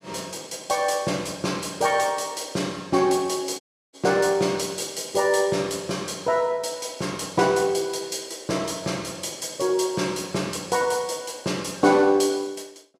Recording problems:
audio cutting out; at 3.5 s

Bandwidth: 14.5 kHz